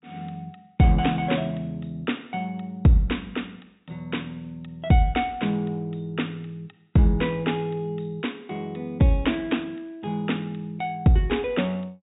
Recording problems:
low-pass filter; nothing above 4 kHz

